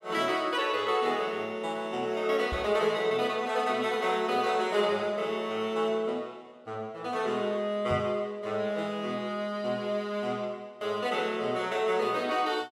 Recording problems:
microphone thump; at 2.5 s and at 8 s; peak -3 dB vs average level

